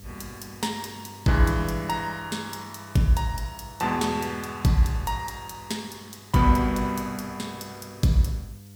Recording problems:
hum; 50 Hz, harmonics up to 700 Hz, SNR 22 dB
background hiss; slope +2 dB per octave, SNR 25 dB

